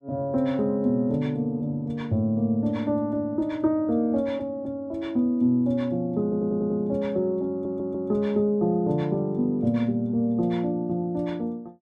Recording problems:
audio stuttering; at 6 s and at 7.5 s

